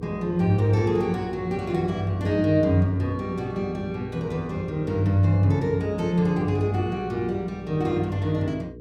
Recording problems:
electrical hum; 60 Hz, harmonics up to 480 Hz, SNR 16 dB

